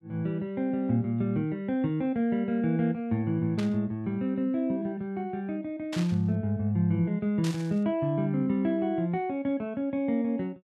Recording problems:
burst of static; at 3.5 s, at 6 s and at 7.5 s; peak -5 dB vs average level

